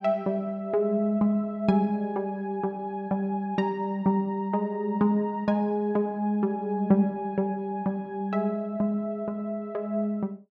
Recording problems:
none

